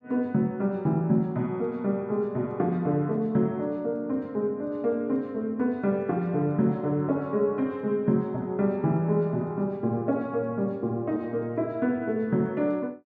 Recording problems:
none

